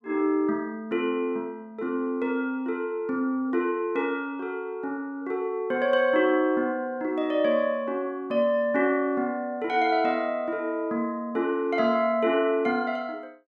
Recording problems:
none

